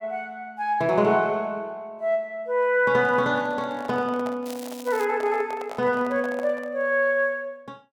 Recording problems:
microphone handling noise; from 3 to 7 s; peak -8 dB vs average level
crackle; at 4.5 s; loose cable, SNR 19 dB

